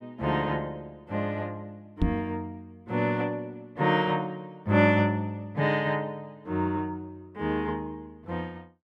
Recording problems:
microphone thump; at 2 s; peak +5 dB vs average level

